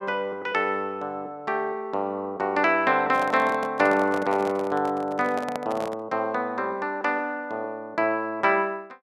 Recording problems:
microphone handling noise; from 3 to 6 s; peak -2 dB vs average level

